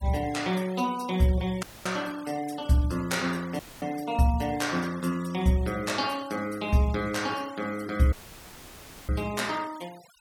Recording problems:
denoising artefacts; signal-to-artefact ratio 20 dB
dropout; at 1.5 s, at 3.5 s and at 8 s for 1 s; filled with static

